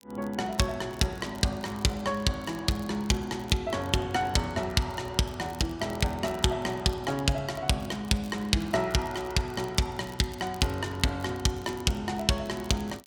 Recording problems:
crackling; vinyl, SNR 23 dB

